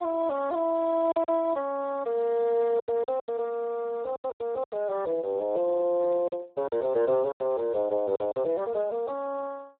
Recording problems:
telephone audio; 280 Hz to 2 kHz, Speex
lost packets; 8% of the sound replaced, filled with silence

